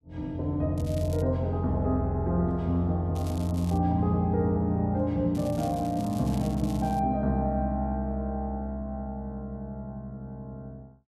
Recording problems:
crackle; at 1 s, at 3 s and from 5.5 to 7 s; loose cable, SNR 20 dB

